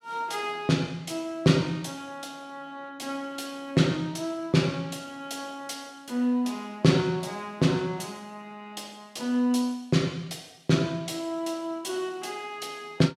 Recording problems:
none

